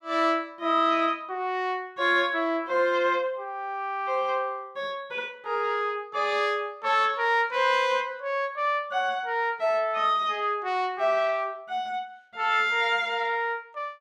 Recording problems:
none

